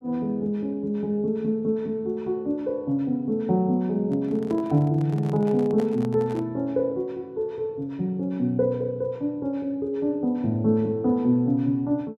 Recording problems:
handling noise; from 4 to 6.5 s; peak -8 dB vs average level

